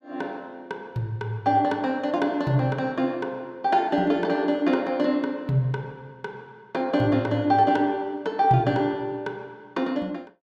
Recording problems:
none

